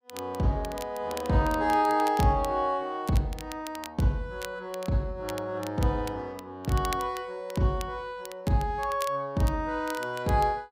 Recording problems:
crackle; vinyl, SNR 16 dB

